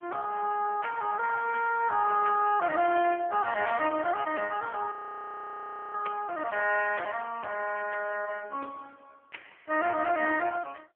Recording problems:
telephone audio; 260 Hz to 3.2 kHz, AMR-NB
audio freezing; at 5 s for 1 s

